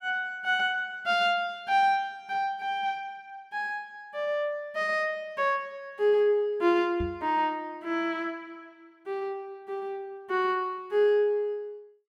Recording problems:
knock on the microphone; at 7 s; peak -4 dB vs average level

